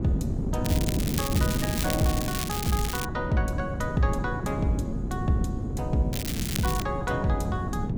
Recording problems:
wind noise; below 250 Hz, SNR 1 dB
crackling; from 0.5 to 3 s and at 6 s; loose cable, SNR 4 dB

